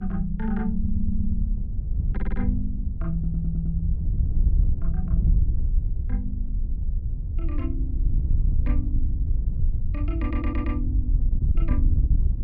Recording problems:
mains hum; 50 Hz, harmonics up to 550 Hz, SNR 30 dB
wind on the microphone; below 74 Hz, SNR -7 dB
stutter; 4 times, first at 1 s

